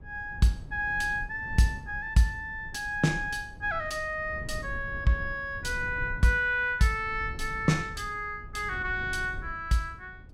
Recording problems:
low-frequency rumble; below 110 Hz, SNR 14 dB

